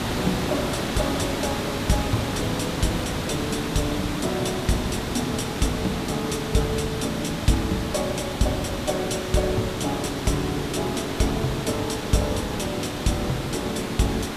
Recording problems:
hiss; slope -4 dB per octave, SNR 2 dB

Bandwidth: 14.5 kHz